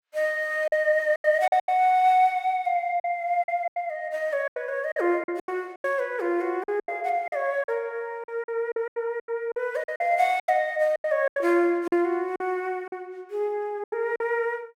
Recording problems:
lost packets; 12% of the sound replaced, filled with silence

